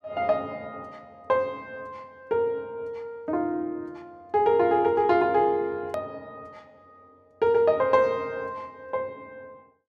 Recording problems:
hard cut with a click; at 6 s

